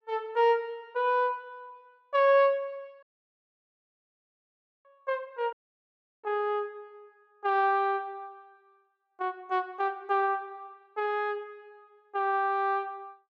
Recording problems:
audio cutting out; at 3 s for 2 s and at 5.5 s for 0.5 s

